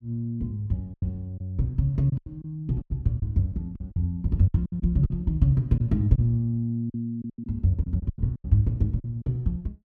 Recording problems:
packet loss; 11% of the sound replaced, filled with silence

